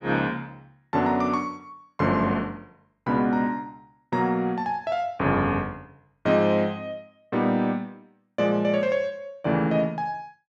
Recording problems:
none

